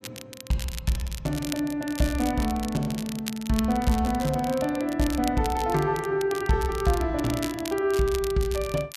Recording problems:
crackling; vinyl, SNR 13 dB

